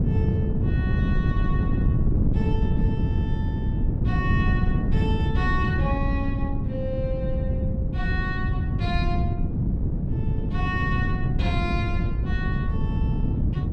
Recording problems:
wind on the microphone; below 170 Hz, SNR -8 dB

